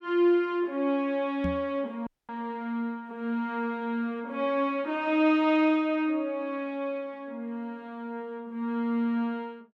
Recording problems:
microphone thump; at 1.5 s; peak 0 dB vs average level
dropout; at 2 s

